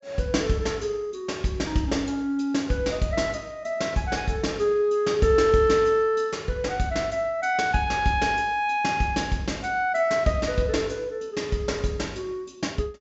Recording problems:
treble cut off; nothing above 7.6 kHz

